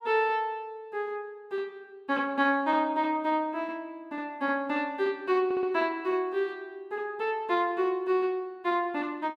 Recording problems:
audio stuttering; at 5.5 s

